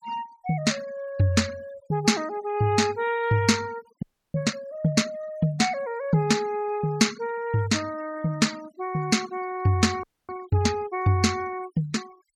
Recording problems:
noise reduction artefacts; signal-to-artefact ratio 20 dB
frozen audio; at 4 s and at 10 s

